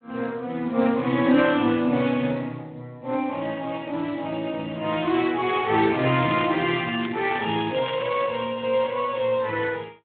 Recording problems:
phone line; 130 Hz to 3.6 kHz, Speex
crackle; from 6.5 to 8.5 s; loose cable, SNR 16 dB

